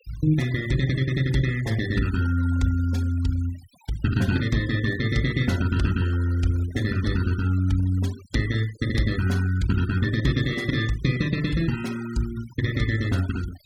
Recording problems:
denoising artefacts; signal-to-artefact ratio 19 dB

